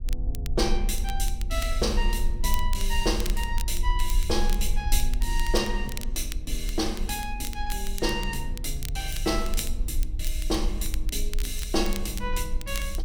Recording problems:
rumble; below 42 Hz, strongest tone 22 Hz, SNR 1 dB
crackle; vinyl, SNR 11 dB

